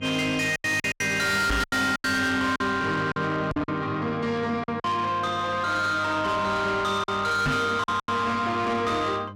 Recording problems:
distorted audio; soft clipping, signal-to-distortion ratio 7 dB
electrical hum; 50 Hz, harmonics up to 900 Hz, SNR 18 dB
packet loss; 8% of the sound replaced, filled with silence
microphone bump; at 1.5 s, at 3.5 s and at 7.5 s; peak +5 dB vs average level

